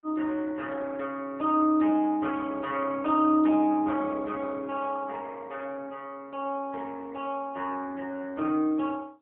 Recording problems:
telephone audio; 220 Hz to 3.3 kHz, AMR-NB, then MP3

